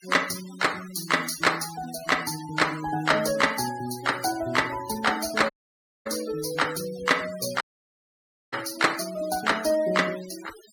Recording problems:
noise reduction artefacts; signal-to-artefact ratio 14 dB
audio cutting out; at 5.5 s for 0.5 s and at 7.5 s for 1 s

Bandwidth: 18 kHz